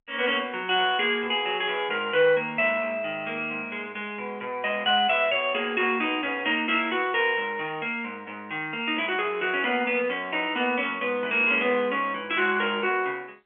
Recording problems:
telephone audio; 280 Hz to 3.2 kHz, G.711

